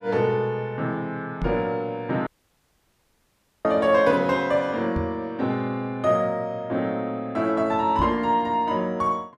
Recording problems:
knock on the microphone; at 1.5 s, at 5 s and at 8 s; peak 0 dB vs average level
audio cutting out; at 2.5 s for 1.5 s

